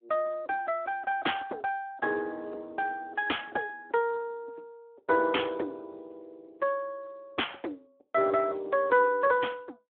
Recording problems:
telephone audio; 260 Hz to 3.4 kHz, Speex

